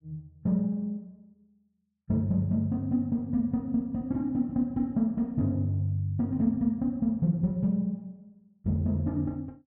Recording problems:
none

